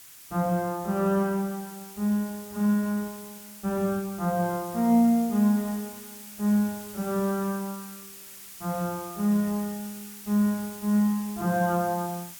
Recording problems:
hiss; SNR 15 dB

